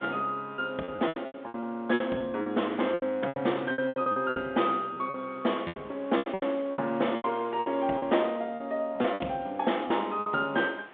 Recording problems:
telephone audio; 220 Hz to 3.6 kHz, G.726
wind noise; below 2 kHz, SNR 23 dB
lost packets; 15% of the sound replaced, filled with repeated pitch periods

